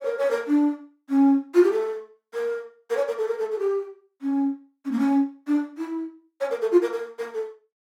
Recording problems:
none

